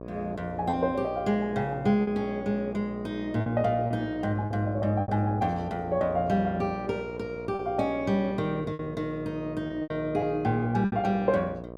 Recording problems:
hum; 60 Hz, harmonics up to 1.3 kHz, SNR 12 dB
packet loss; 5% of the sound replaced, filled with repeated pitch periods

